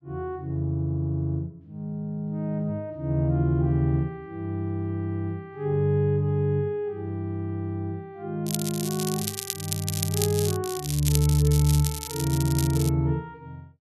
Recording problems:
crackling; from 8.5 to 13 s; loose cable, SNR 5 dB

